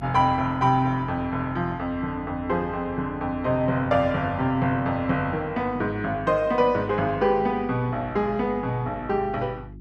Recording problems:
hum; 50 Hz, harmonics up to 350 Hz, SNR 18 dB

